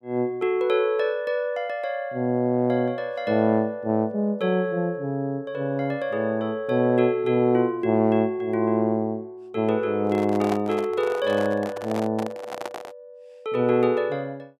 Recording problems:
microphone handling noise; from 10 to 13 s; peak -2 dB vs average level

